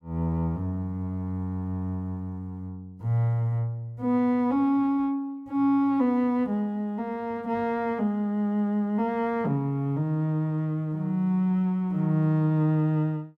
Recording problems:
none

